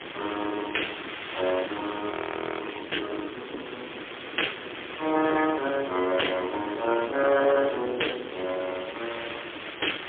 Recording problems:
telephone audio; 280 Hz to 3.4 kHz, AMR-NB, then MP3
distorted audio; soft clipping, signal-to-distortion ratio 12 dB
background hiss; SNR 10 dB
wind on the microphone; below 710 Hz, SNR 12 dB
frozen audio; at 2 s

